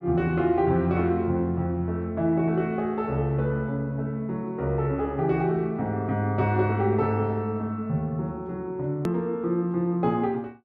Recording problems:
click at an edit; at 9 s

